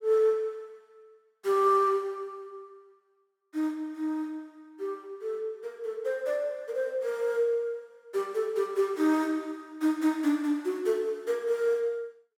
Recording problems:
none

